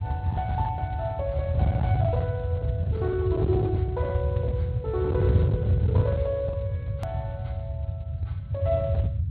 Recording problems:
treble missing; nothing above 4.5 kHz
lossy codec; MP3, then Speex, log-spectral distance 2 dB
distorted audio; hard clipping, uneven, signal-to-distortion ratio 12 dB
rumble; below 130 Hz, SNR -4 dB
hard cut with a click; at 7 s

